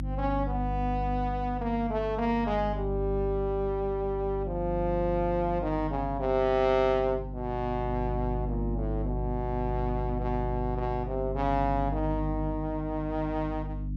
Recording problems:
hum; 50 Hz, harmonics up to 300 Hz, SNR 5 dB

